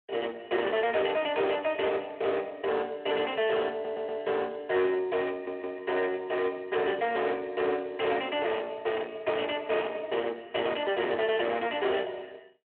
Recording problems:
phone line; 280 Hz to 3.5 kHz, Speex
distortion; soft clipping, signal-to-distortion ratio 9 dB
stutter; at 3.5 s and at 5.5 s

